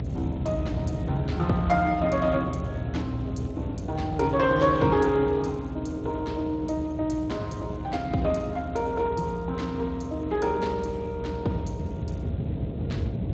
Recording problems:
lossy compression; Speex, log-spectral distance 3 dB, nothing above 7.6 kHz
hum; 60 Hz, harmonics up to 720 Hz, SNR 14 dB
low-frequency rumble; below 180 Hz, SNR 7 dB

